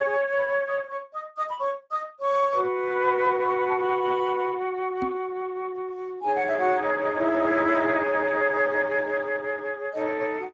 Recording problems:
lossy codec; Speex, log-spectral distance 3 dB
microphone bump; at 5 s; peak -2 dB vs average level

